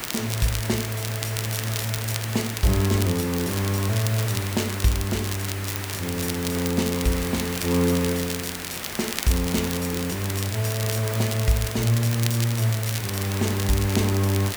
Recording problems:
background hiss; SNR 8 dB
crackling; vinyl, SNR 8 dB

